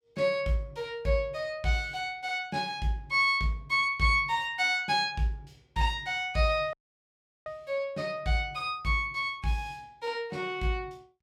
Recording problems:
dropout; at 6.5 s for 0.5 s

